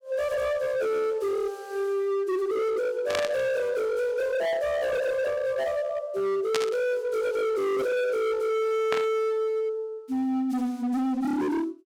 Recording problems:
distortion; hard clipping, signal-to-distortion ratio 8 dB
burst of static; at 3 s, at 6.5 s and at 9 s; peak +2 dB vs average level

